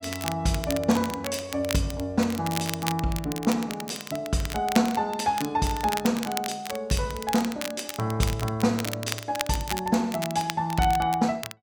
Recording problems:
crackling; vinyl, SNR 9 dB

